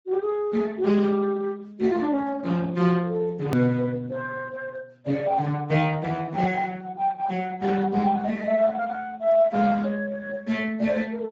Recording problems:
lossy compression; Speex, log-spectral distance 3 dB, nothing above 20.1 kHz
hard cut with a click; at 3.5 s

